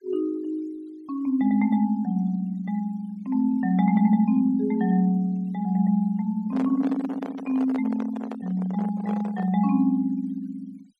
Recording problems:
denoising artefacts; signal-to-artefact ratio 28 dB
handling noise; from 6.5 to 9.5 s; peak -7 dB vs average level

